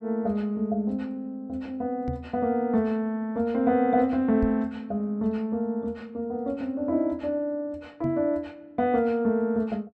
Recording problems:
microphone bump; at 2 s, at 4.5 s and at 8 s; peak 0 dB vs average level

